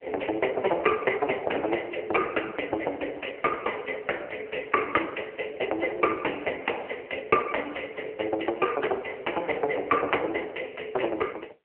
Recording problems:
telephone audio; 300 Hz to 3 kHz, AMR-NB

